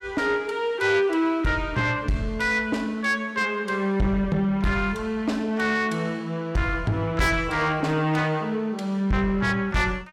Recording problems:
distorted audio; soft clipping, signal-to-distortion ratio 10 dB

